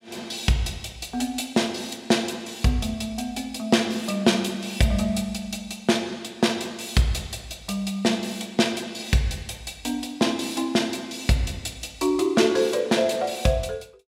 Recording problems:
none

